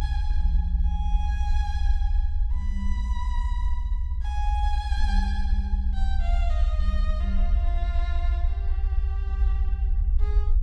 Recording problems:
low-frequency rumble; below 60 Hz, SNR -12 dB

